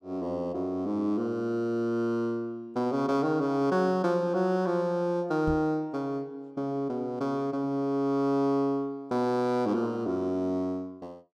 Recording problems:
microphone bump; at 5.5 s; peak -2 dB vs average level

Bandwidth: 14 kHz